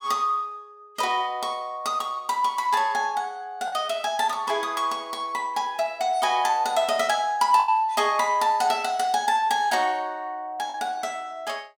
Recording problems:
lost packets; 1.4% of the sound replaced, filled with the last packet

